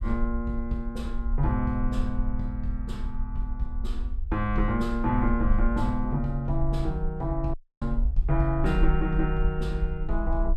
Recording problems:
low-frequency rumble; below 52 Hz, SNR 2 dB
audio cutting out; at 7.5 s

